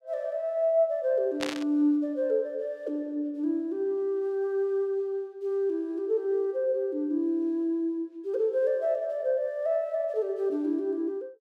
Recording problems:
burst of static; at 1.5 s; peak 0 dB vs average level

